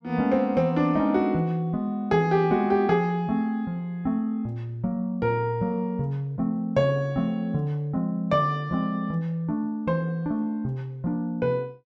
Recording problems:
none

